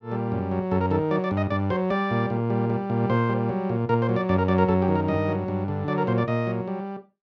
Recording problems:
none

